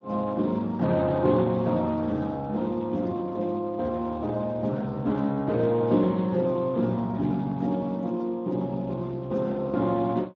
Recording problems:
lossy compression; Speex, log-spectral distance 2 dB

